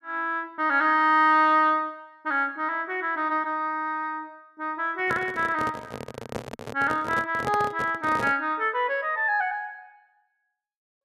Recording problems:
microphone handling noise; from 5 to 8.5 s; peak -3 dB vs average level

